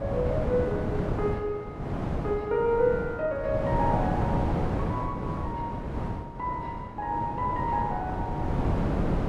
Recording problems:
wind on the microphone; below 430 Hz, SNR 1 dB

